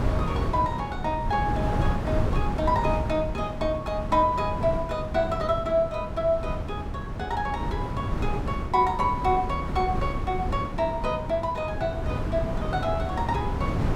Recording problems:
wind noise; below 260 Hz, SNR 3 dB

